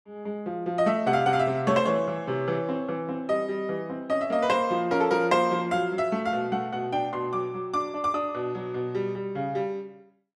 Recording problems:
none

